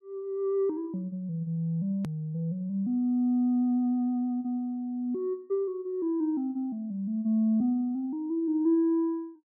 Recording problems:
click at an edit; at 2 s

